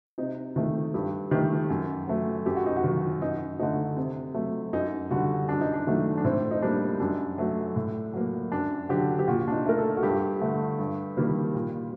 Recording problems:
none

